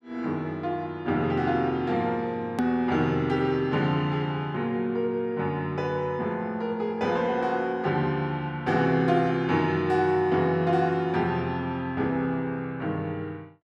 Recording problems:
hard cut with a click; at 2.5 s

